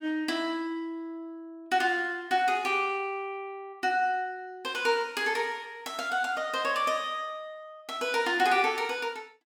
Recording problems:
none

